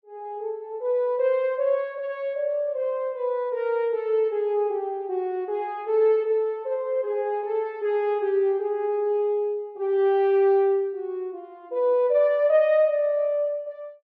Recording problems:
none

